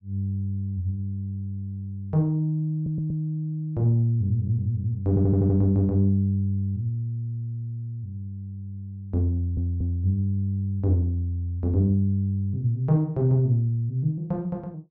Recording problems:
audio stuttering; 4 times, first at 2.5 s

